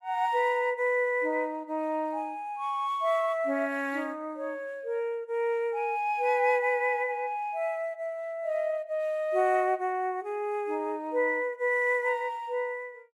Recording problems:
none

